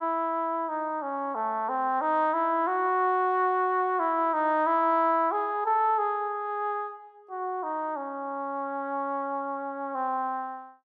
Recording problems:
none

